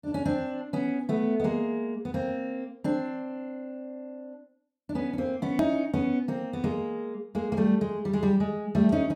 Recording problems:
edit click; at 5.5 s

